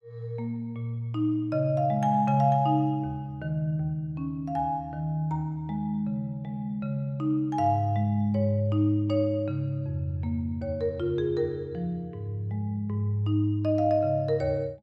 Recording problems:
none

